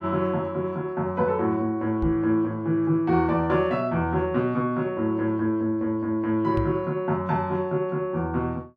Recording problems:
knock on the microphone; at 2 s and at 6.5 s; peak -1 dB vs average level

